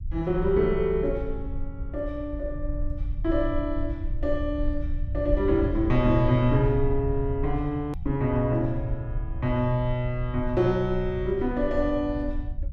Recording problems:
low-frequency rumble; below 70 Hz, SNR 7 dB
edit click; at 8 s

